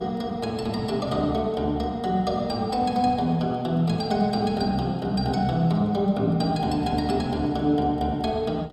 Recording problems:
hum; 60 Hz, harmonics up to 600 Hz, SNR 26 dB

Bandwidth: 15.5 kHz